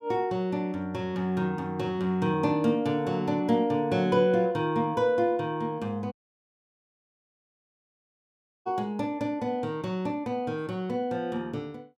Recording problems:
audio cutting out; at 6 s for 2.5 s

